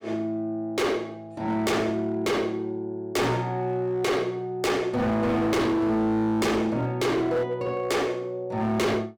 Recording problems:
distortion; hard clipping, signal-to-distortion ratio 7 dB

